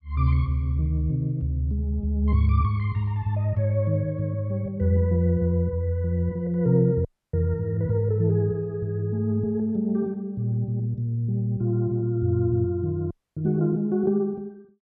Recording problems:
audio cutting out; at 7 s and at 13 s

